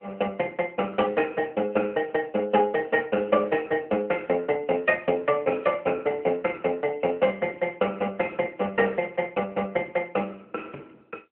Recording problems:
phone line; 240 Hz to 2.7 kHz, AMR-NB

